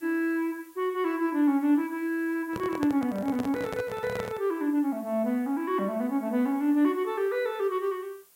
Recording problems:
background hiss; slope 0 dB per octave, SNR 27 dB
microphone handling noise; from 2.5 to 4.5 s; peak -3 dB vs average level

